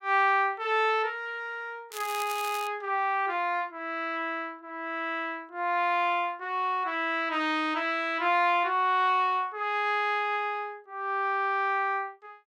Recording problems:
crackle; at 2 s; loose cable, SNR 13 dB

